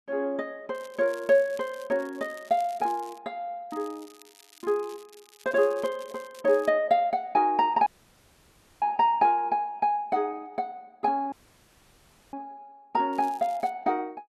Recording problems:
crackling; from 0.5 to 3 s, from 3.5 to 6.5 s and at 13 s; loose cable, SNR 25 dB
dropout; at 8 s for 1 s and at 11 s for 1 s

